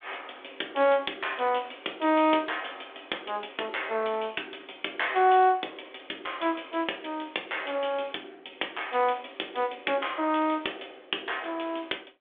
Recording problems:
phone line; 260 Hz to 3.6 kHz, G.726

